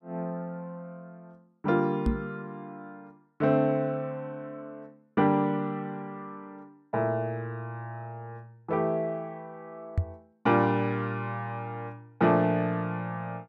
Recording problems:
microphone thump; at 2 s and at 10 s; peak +6 dB vs average level

